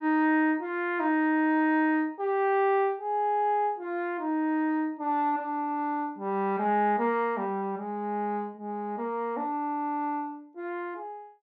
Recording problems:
low-pass filter; nothing above 8 kHz

